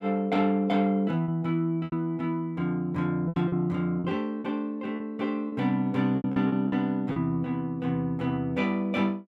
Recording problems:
lost packets; 7% of the sound replaced, filled with repeated pitch periods

